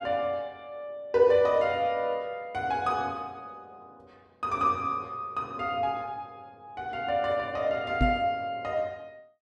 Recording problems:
knock on the microphone; at 8 s; peak +6 dB vs average level

